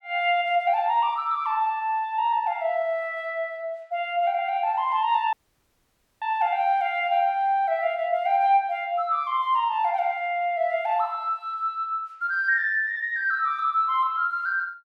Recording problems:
audio cutting out; at 5.5 s for 1 s

